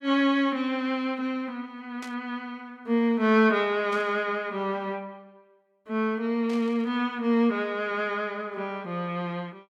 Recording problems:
static burst; at 2 s, at 4 s and at 6.5 s; peak -12 dB vs average level

